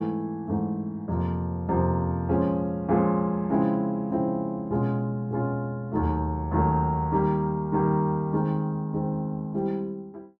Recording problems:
none

